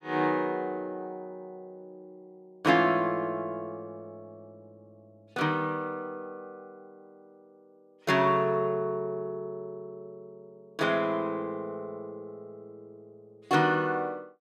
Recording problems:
none

